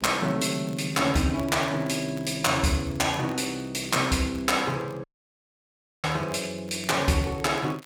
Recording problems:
crackle; vinyl, SNR 25 dB
audio cutting out; at 5 s for 1 s

